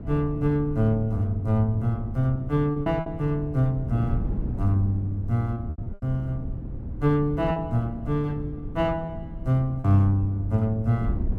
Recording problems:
wind on the microphone; below 160 Hz, SNR 10 dB
packet loss; 4% of the sound replaced, filled with repeated pitch periods

